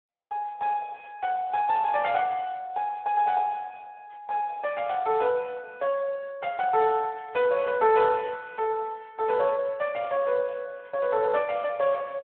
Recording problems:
phone line; 320 Hz to 3 kHz, Speex

